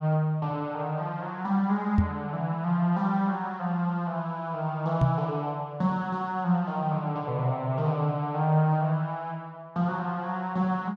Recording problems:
knock on the microphone; at 2 s and at 5 s; peak +8 dB vs average level

